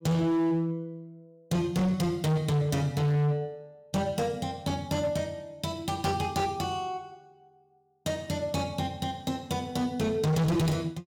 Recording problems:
distortion; hard clipping, signal-to-distortion ratio 7 dB

